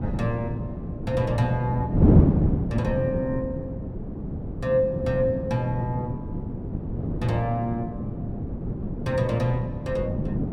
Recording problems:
wind on the microphone; below 260 Hz, SNR 0 dB

